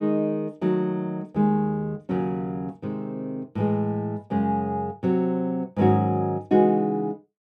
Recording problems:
none

